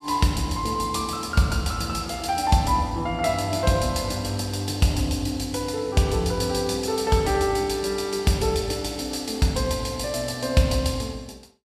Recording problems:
none

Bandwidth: 14.5 kHz